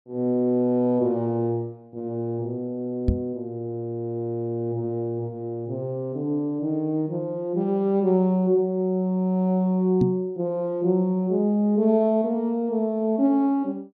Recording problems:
microphone bump; at 3 s and at 10 s; peak +6 dB vs average level

